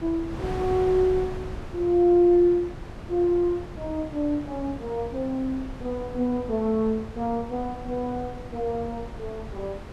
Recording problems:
wind noise; below 430 Hz, SNR 13 dB

